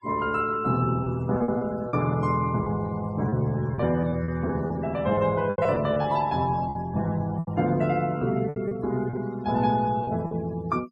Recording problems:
noise reduction artefacts; signal-to-artefact ratio 22 dB
packet loss; 8% of the sound replaced, filled with repeated pitch periods

